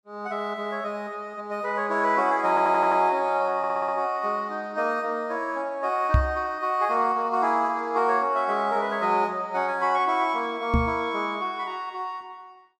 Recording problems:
stutter; at 2.5 s and at 3.5 s
microphone thump; at 6 s and at 11 s; peak +7 dB vs average level

